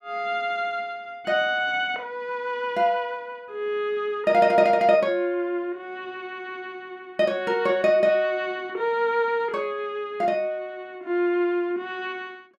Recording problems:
none

